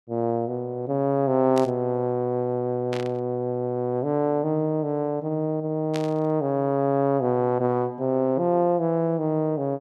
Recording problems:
static burst; at 1.5 s, at 3 s and at 6 s; peak -7 dB vs average level

